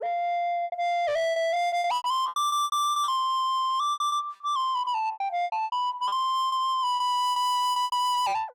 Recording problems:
distorted audio; soft clipping, signal-to-distortion ratio 6 dB
packet loss; 15% of the sound replaced, filled with repeated pitch periods

